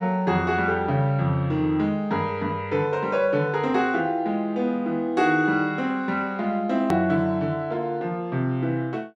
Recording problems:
click at an edit; at 7 s

